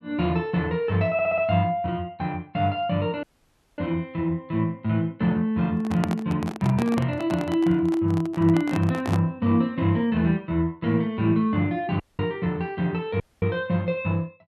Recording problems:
audio stuttering; at 1 s
dropout; at 3 s for 0.5 s, at 12 s and at 13 s
handling noise; from 6 to 9.5 s; peak 0 dB vs average level

